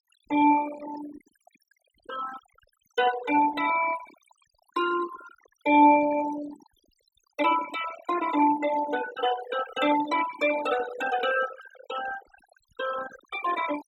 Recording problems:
denoising artefacts; signal-to-artefact ratio 11 dB

